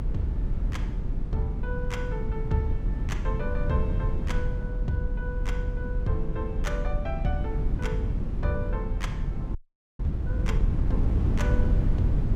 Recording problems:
hum; 50 Hz, harmonics up to 1 kHz, SNR 17 dB
rumble; below 42 Hz, strongest tone 40 Hz, SNR 0 dB
wind on the microphone; below 140 Hz, SNR -4 dB
audio freezing; at 9.5 s

